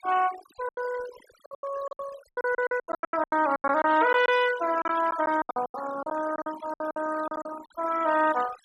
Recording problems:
denoising artefacts; signal-to-artefact ratio 14 dB
packet loss; 19% of the sound replaced, filled with silence

